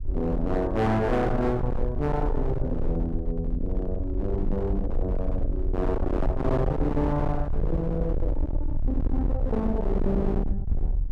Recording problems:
distortion; hard clipping, signal-to-distortion ratio 7 dB
rumble; below 72 Hz, SNR 2 dB

